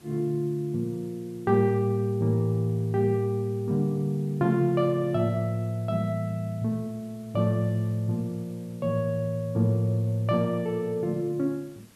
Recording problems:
hiss; slope -3 dB per octave, SNR 28 dB

